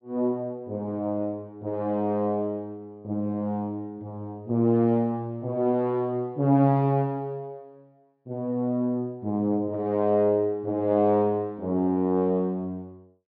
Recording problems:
treble missing; nothing above 5.5 kHz

